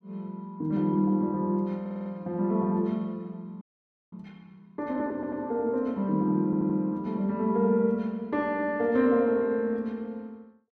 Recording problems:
audio stuttering; at 2 s, at 5 s and at 6.5 s
audio freezing; at 3.5 s for 0.5 s

